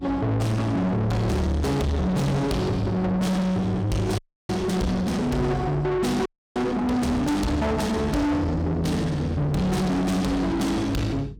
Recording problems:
distortion; soft clipping, signal-to-distortion ratio 7 dB
electrical hum; 50 Hz, harmonics up to 450 Hz, SNR 20 dB
audio freezing; at 4 s and at 6.5 s

